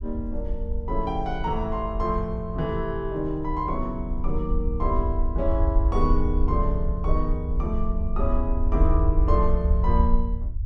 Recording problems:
rumble; below 64 Hz, SNR -1 dB

